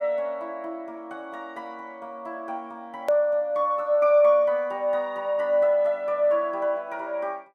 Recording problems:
edit click; at 3 s

